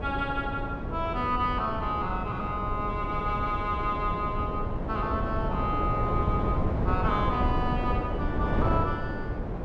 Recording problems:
wind on the microphone; below 370 Hz, SNR 1 dB

